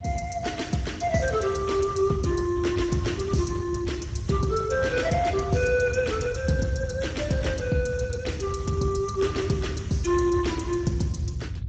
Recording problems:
lossy compression; Speex, log-spectral distance 3 dB, nothing above 7.6 kHz
rumble; below 120 Hz, SNR 8 dB

